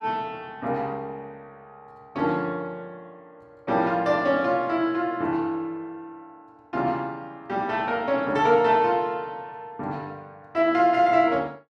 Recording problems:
none

